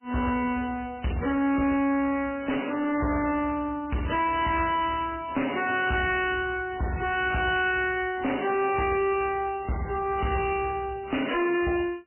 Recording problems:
lossy codec; MP3, log-spectral distance 5 dB, nothing above 2.4 kHz
distorted audio; soft clipping, signal-to-distortion ratio 7 dB

